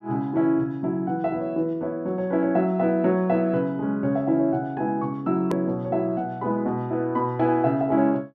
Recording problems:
click at an edit; at 5.5 s

